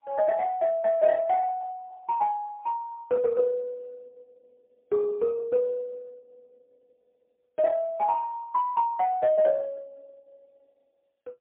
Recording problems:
telephone audio; 190 Hz to 2.6 kHz, AMR-NB, then MP3

